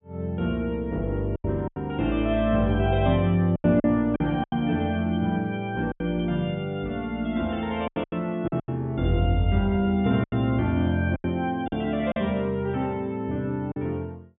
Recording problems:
treble missing; nothing above 3.6 kHz
packet loss; 7% of the sound replaced, filled with silence

